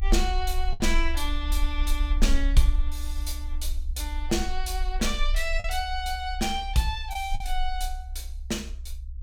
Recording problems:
rumble; below 44 Hz, strongest tone 22 Hz, SNR 1 dB
packet loss; 2% of the sound replaced, filled with the last packet

